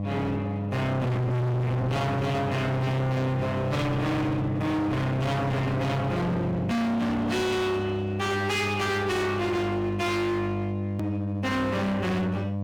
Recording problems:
distortion; hard clipping, signal-to-distortion ratio 6 dB
electrical hum; 50 Hz, harmonics up to 700 Hz, SNR 5 dB
hard cut with a click; at 11 s

